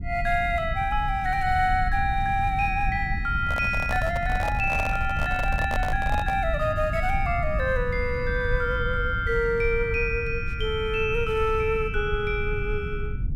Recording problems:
rumble; below 94 Hz, SNR 6 dB
microphone handling noise; from 3.5 to 6.5 s; peak -2 dB vs average level

